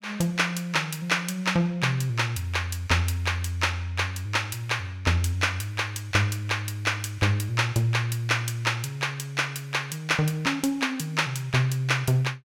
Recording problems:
none

